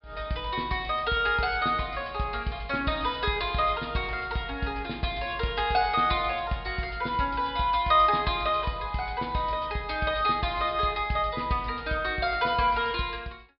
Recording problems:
low-pass filter; nothing above 5 kHz

